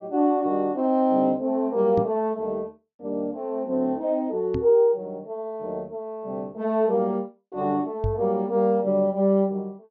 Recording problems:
low-pass filter; nothing above 7.2 kHz
microphone bump; at 2 s, at 4.5 s and at 8 s; peak 0 dB vs average level

